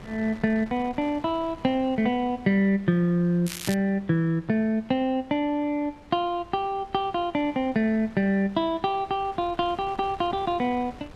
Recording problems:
wind on the microphone; below 1 kHz, SNR 22 dB
crackle; at 3.5 s; loose cable, SNR 11 dB

